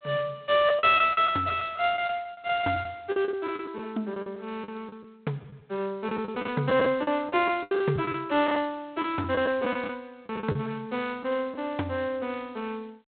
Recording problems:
telephone audio; 240 Hz to 3.9 kHz, G.726
packet loss; 10% of the sound replaced, filled with the last packet

